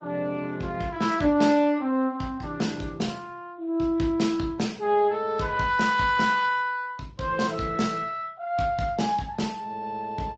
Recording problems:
codec artefacts; Speex, then Opus, log-spectral distance 3 dB

